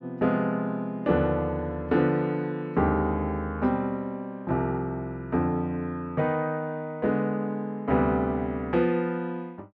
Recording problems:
none

